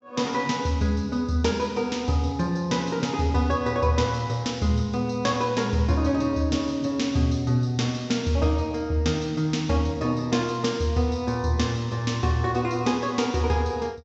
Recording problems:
treble cut off; nothing above 7.6 kHz

